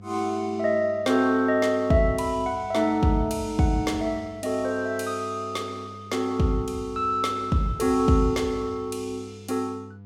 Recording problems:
mains hum; 50 Hz, harmonics up to 700 Hz, SNR 19 dB

